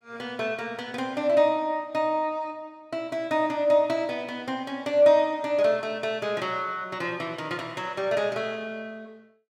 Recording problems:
none

